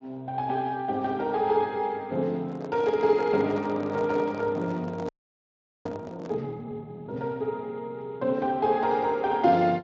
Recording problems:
lossy compression; Speex, log-spectral distance 2 dB
microphone handling noise; from 2.5 to 6.5 s; peak -6 dB vs average level
audio freezing; at 5 s for 1 s

